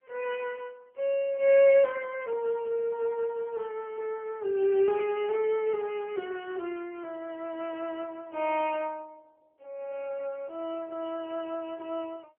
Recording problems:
telephone audio; 340 Hz to 3.3 kHz, AMR-NB

